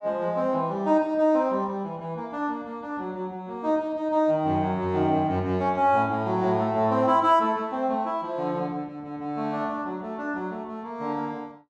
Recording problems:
none

